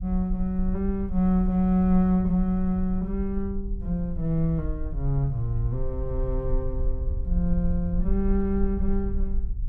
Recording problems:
low-frequency rumble; below 56 Hz, SNR 6 dB

